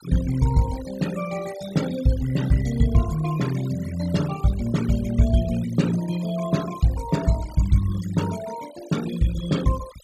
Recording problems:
denoising artefacts; signal-to-artefact ratio 15 dB

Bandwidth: 14.5 kHz